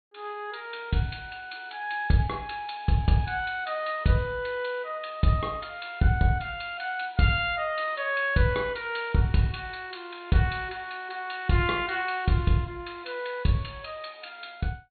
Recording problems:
low-pass filter; nothing above 4.4 kHz

